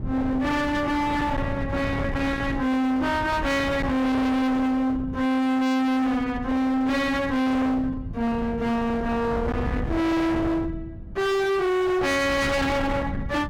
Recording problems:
distortion; hard clipping, signal-to-distortion ratio 6 dB
wind on the microphone; below 330 Hz, SNR 9 dB

